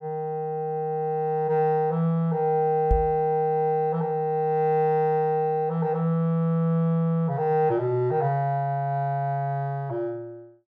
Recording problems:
knock on the microphone; at 3 s; peak +4 dB vs average level

